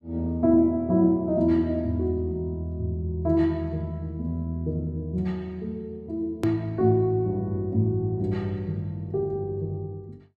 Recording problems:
click at an edit; at 6.5 s

